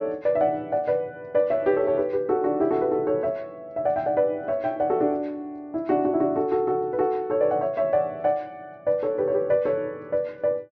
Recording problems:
low-pass filter; nothing above 6.2 kHz

